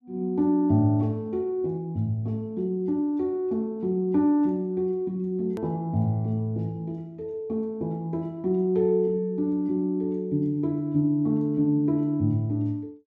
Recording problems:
click at an edit; at 5.5 s

